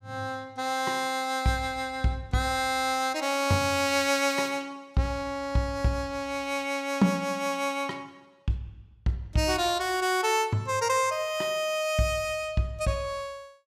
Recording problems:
none

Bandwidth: 14.5 kHz